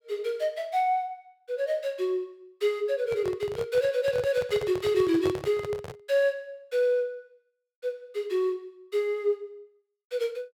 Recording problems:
microphone handling noise; from 3 to 6 s; peak -2 dB vs average level

